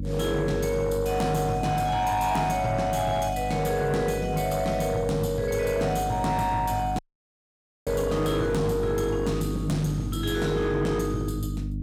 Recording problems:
distortion; soft clipping, signal-to-distortion ratio 12 dB
hum; 50 Hz, harmonics up to 300 Hz, SNR 7 dB
audio cutting out; at 7 s for 1 s

